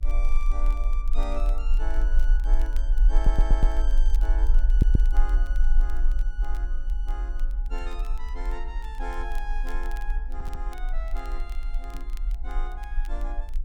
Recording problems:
hum; 60 Hz, harmonics up to 420 Hz, SNR 14 dB
low-frequency rumble; below 40 Hz, strongest tone 22 Hz, SNR -12 dB
crackle; vinyl, SNR 17 dB
stutter; at 3 s, at 4.5 s and at 10 s
knock on the microphone; at 12 s; peak -2 dB vs average level

